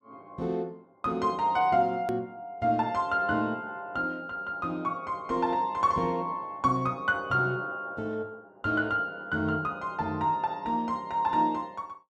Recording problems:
hard cut with a click; at 2 s

